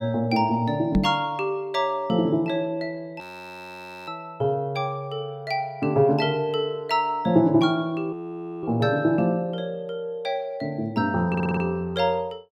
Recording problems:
knock on the microphone; at 1 s; peak +6 dB vs average level
audio freezing; at 3 s for 1 s and at 8 s for 0.5 s
audio stuttering; at 11 s

